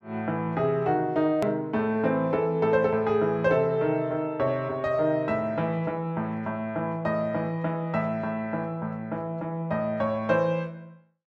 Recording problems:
click at an edit; at 1.5 s

